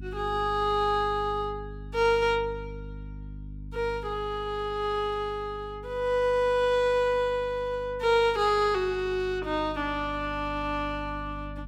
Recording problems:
electrical hum; 50 Hz, harmonics up to 300 Hz, SNR 15 dB

